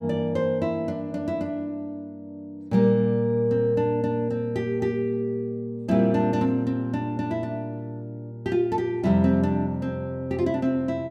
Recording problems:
none

